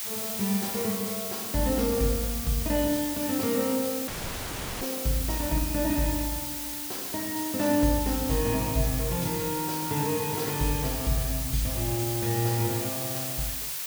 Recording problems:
hiss; slope +2 dB per octave, SNR 3 dB
dropout; at 4 s for 0.5 s

